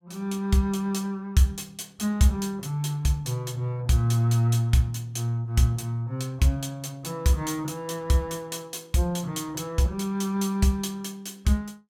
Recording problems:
none

